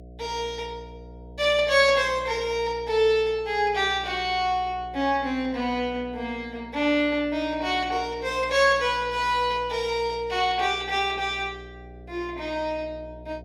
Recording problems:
electrical hum; 60 Hz, harmonics up to 720 Hz, SNR 20 dB

